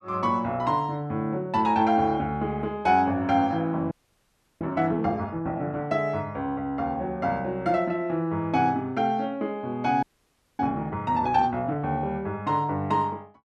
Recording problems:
audio freezing; at 4 s for 0.5 s and at 10 s for 0.5 s

